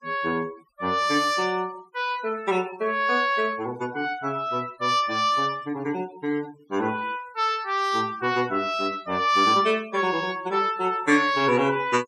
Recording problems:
denoising artefacts; signal-to-artefact ratio 22 dB

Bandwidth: 15.5 kHz